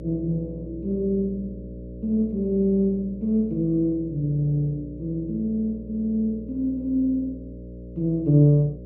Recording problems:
hum; 60 Hz, harmonics up to 600 Hz, SNR 14 dB

